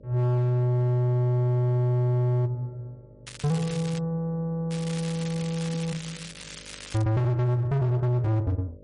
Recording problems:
lossy compression; MP3, log-spectral distance 3 dB, nothing above 10.4 kHz
distorted audio; hard clipping, signal-to-distortion ratio 10 dB
electrical hum; 50 Hz, harmonics up to 600 Hz, SNR 26 dB
crackling; at 3.5 s and from 4.5 to 7 s; loose cable, SNR 14 dB

